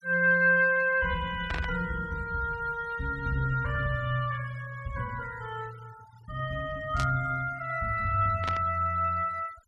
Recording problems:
noise reduction artefacts; signal-to-artefact ratio 23 dB
static burst; at 1.5 s, at 7 s and at 8.5 s; peak -3 dB vs average level

